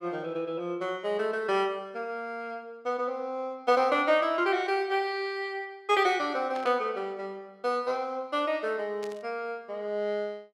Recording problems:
burst of static; at 6.5 s and at 9 s; peak -10 dB vs average level

